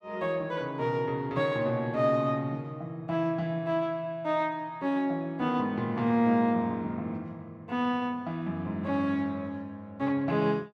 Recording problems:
none

